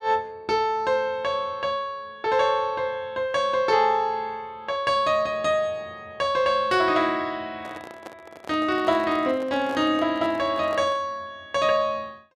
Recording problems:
handling noise; from 7.5 to 11 s; peak -9 dB vs average level

